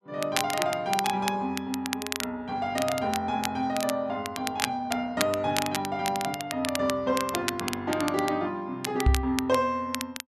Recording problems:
crackle; vinyl, SNR 6 dB
microphone bump; at 9 s; peak +9 dB vs average level

